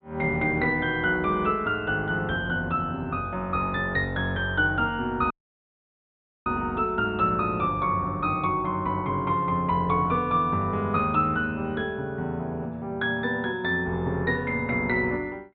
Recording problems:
treble cut off; nothing above 4 kHz
audio cutting out; at 5.5 s for 1 s

